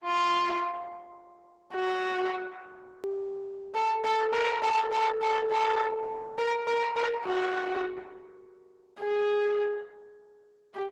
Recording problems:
codec artefacts; Opus, log-spectral distance 4 dB
distortion; soft clipping, signal-to-distortion ratio 7 dB
edit click; at 3 s

